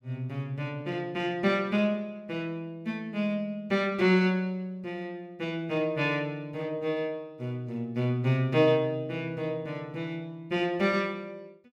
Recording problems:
none

